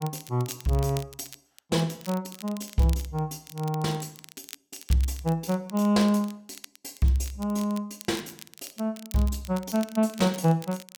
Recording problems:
crackle; vinyl, SNR 18 dB

